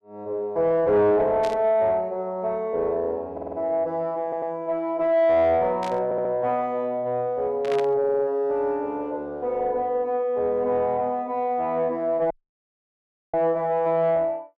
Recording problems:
distortion; soft clipping, signal-to-distortion ratio 10 dB
static burst; at 1.5 s, at 6 s and at 7.5 s; peak -8 dB vs average level
audio stuttering; 4 times, first at 3.5 s
audio cutting out; at 12 s for 1 s

